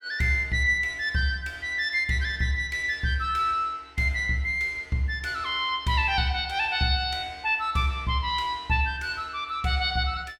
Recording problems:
none

